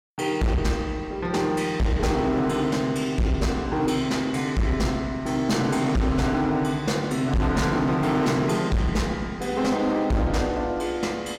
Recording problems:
distortion; hard clipping, signal-to-distortion ratio 8 dB

